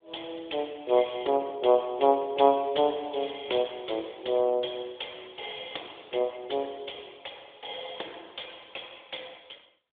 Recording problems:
telephone audio; 300 Hz to 3.6 kHz, AMR-NB

